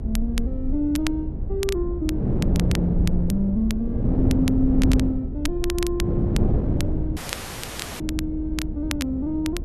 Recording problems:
low-frequency rumble; below 68 Hz, SNR 6 dB
wind on the microphone; below 230 Hz, SNR 0 dB
crackling; vinyl, SNR 10 dB
audio cutting out; at 7 s for 1 s

